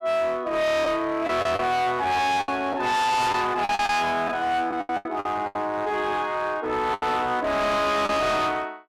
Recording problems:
distorted audio; hard clipping, uneven, signal-to-distortion ratio 6 dB
packet loss; 8% of the sound replaced, filled with the last packet

